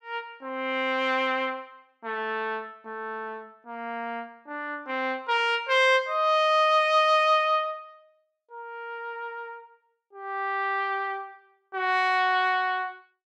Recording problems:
none

